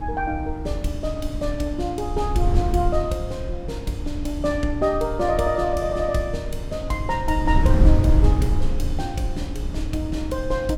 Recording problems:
wind noise; below 88 Hz, SNR 0 dB

